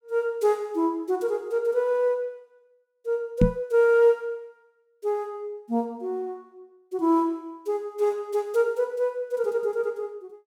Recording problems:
microphone bump; at 3.5 s; peak +9 dB vs average level

